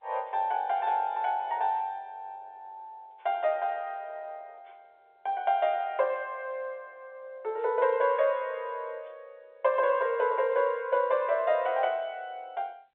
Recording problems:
telephone audio; 340 Hz to 3.7 kHz, G.711

